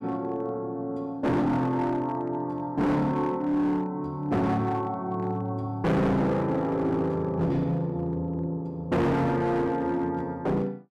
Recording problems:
distorted audio; hard clipping, uneven, signal-to-distortion ratio 7 dB

